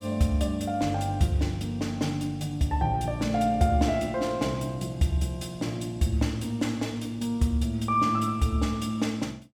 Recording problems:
none

